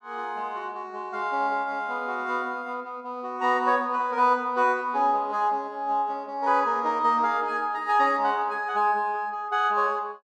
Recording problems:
none

